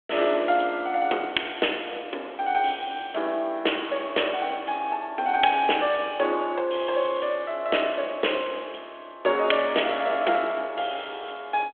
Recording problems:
phone line; 280 Hz to 3.4 kHz, G.726

